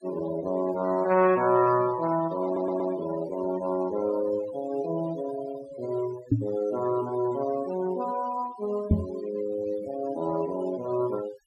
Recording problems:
noise reduction artefacts; signal-to-artefact ratio 15 dB
stutter; at 2.5 s
microphone bump; at 6.5 s and at 9 s; peak +9 dB vs average level

